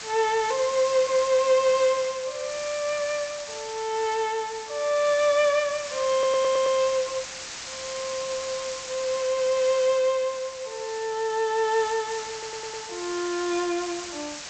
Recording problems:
lossy codec; G.722, log-spectral distance 14 dB
hiss; slope +1 dB per octave, SNR 10 dB
stutter; at 6 s and at 12 s

